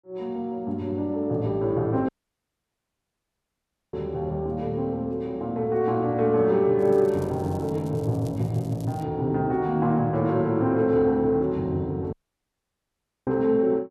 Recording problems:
dropout; at 2 s for 2 s and at 12 s for 1 s
crackle; from 7 to 9 s; loose cable, SNR 28 dB

